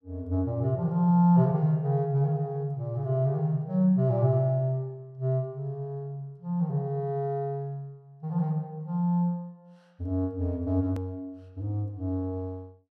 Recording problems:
edit click; at 11 s

